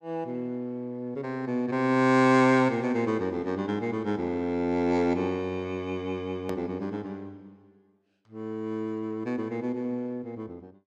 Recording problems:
click at an edit; at 6.5 s

